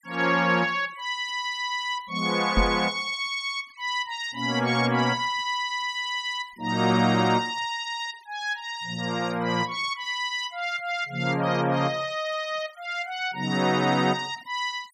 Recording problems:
denoising artefacts; signal-to-artefact ratio 24 dB
microphone thump; at 2.5 s; peak +5 dB vs average level

